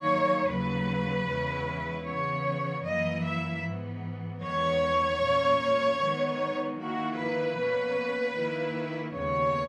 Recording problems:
none

